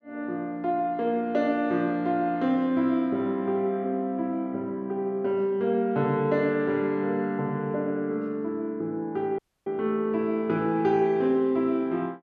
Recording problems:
audio cutting out; at 9.5 s

